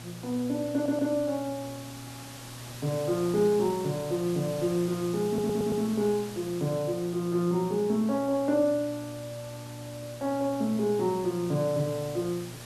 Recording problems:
hum; 60 Hz, harmonics up to 840 Hz, SNR 17 dB
background hiss; slope -2 dB per octave, SNR 16 dB
audio stuttering; at 0.5 s and at 5.5 s

